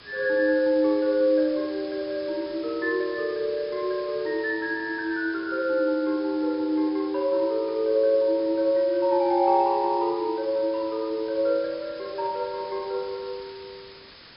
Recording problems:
low-pass filter; nothing above 5.5 kHz
background hiss; SNR 20 dB

